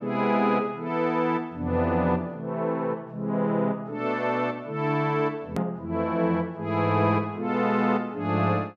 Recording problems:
edit click; at 5.5 s

